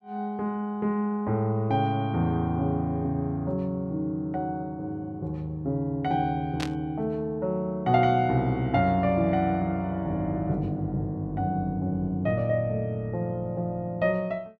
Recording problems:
static burst; at 6.5 s; peak -2 dB vs average level

